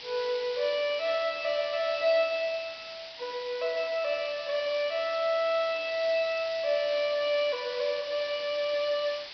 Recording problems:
treble cut off; nothing above 5.5 kHz
background hiss; SNR 11 dB

